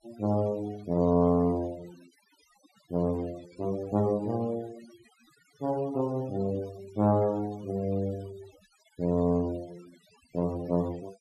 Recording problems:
noise reduction artefacts; signal-to-artefact ratio 22 dB

